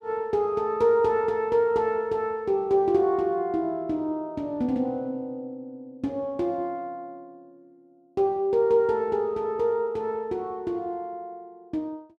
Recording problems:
none

